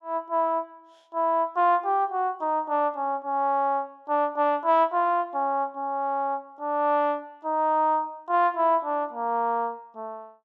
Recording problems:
none

